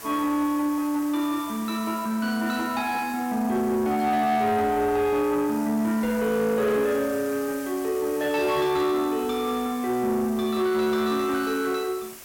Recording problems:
distortion; soft clipping, signal-to-distortion ratio 12 dB
hiss; slope -2 dB per octave, SNR 16 dB

